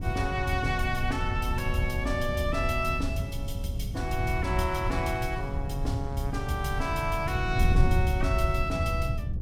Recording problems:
wind noise; below 110 Hz, SNR 0 dB

